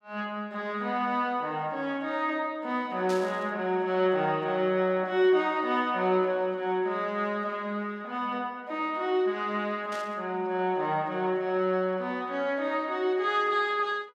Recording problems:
static burst; at 3 s and at 10 s; peak -8 dB vs average level

